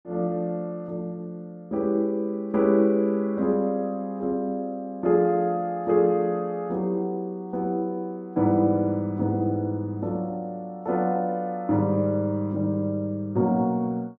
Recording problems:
none

